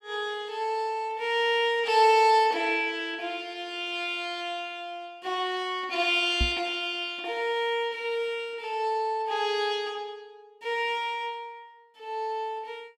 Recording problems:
knock on the microphone; at 6.5 s; peak +3 dB vs average level

